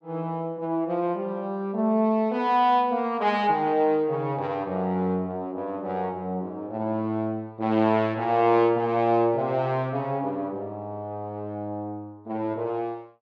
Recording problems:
none

